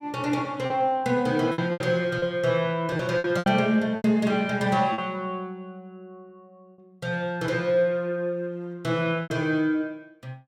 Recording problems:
packet loss; 6% of the sound replaced, filled with repeated pitch periods

